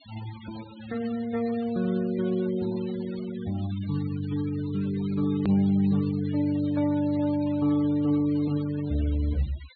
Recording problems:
treble missing; nothing above 4.4 kHz
noise reduction artefacts; signal-to-artefact ratio 21 dB
edit click; at 5.5 s

